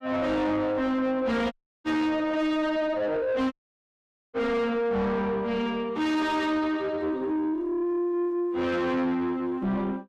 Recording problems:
distorted audio; soft clipping, signal-to-distortion ratio 7 dB
audio cutting out; at 1.5 s and at 3.5 s for 1 s

